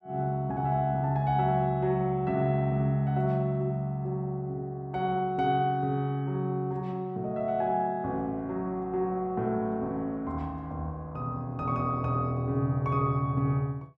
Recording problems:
none

